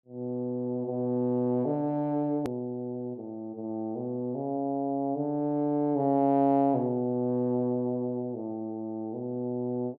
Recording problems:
hard cut with a click; at 2.5 s

